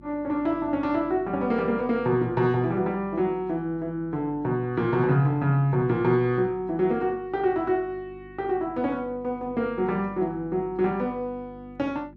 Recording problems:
electrical hum; 50 Hz, harmonics up to 350 Hz, SNR 21 dB

